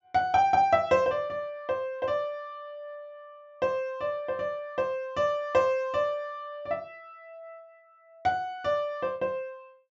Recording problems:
treble cut off; nothing above 7.4 kHz

